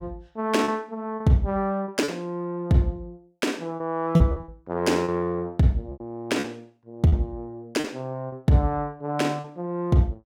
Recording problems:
packet loss; 7% of the sound replaced, filled with repeated pitch periods

